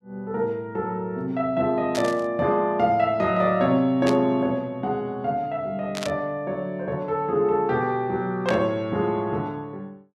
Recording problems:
burst of static; 4 times, first at 2 s; peak -2 dB vs average level

